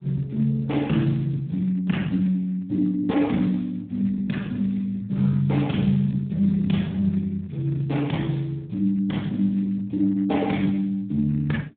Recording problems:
telephone audio; 110 Hz to 3.9 kHz, Speex

